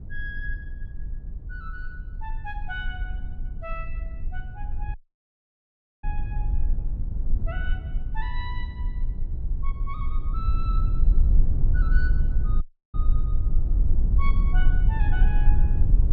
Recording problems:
rumble; below 52 Hz, strongest tone 20 Hz, SNR -12 dB
audio cutting out; at 5 s for 1 s and at 13 s

